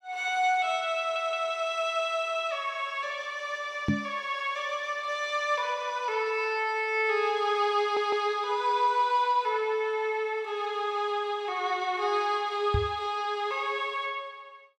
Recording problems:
audio stuttering; at 1 s and at 8 s
microphone bump; at 4 s and at 13 s; peak +5 dB vs average level

